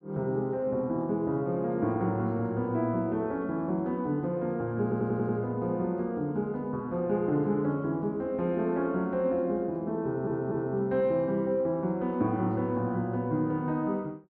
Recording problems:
audio stuttering; at 5 s and at 10 s

